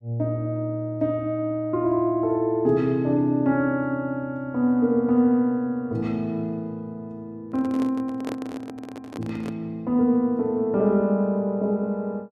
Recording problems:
handling noise; from 7.5 to 9.5 s; peak -4 dB vs average level

